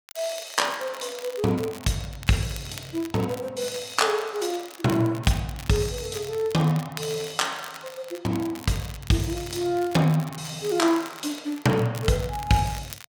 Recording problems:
crackling; vinyl, SNR 17 dB

